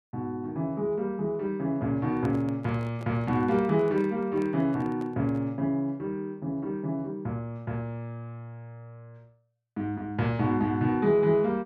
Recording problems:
microphone handling noise; from 2 to 5.5 s; peak -9 dB vs average level

